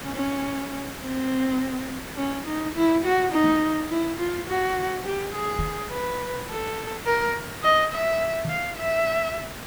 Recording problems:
hiss; slope -4 dB per octave, SNR 10 dB
knock on the microphone; at 3.5 s, at 5.5 s and at 8.5 s; peak 0 dB vs average level

